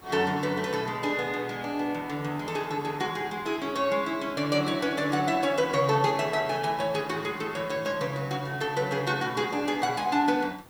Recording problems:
background hiss; slope -5 dB per octave, SNR 24 dB

